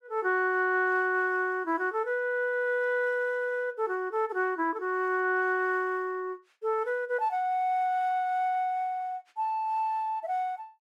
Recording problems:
none

